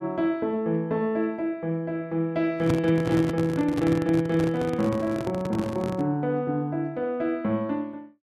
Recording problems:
handling noise; from 2.5 to 6 s; peak +4 dB vs average level

